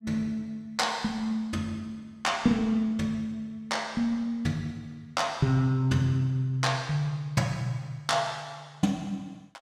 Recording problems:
none

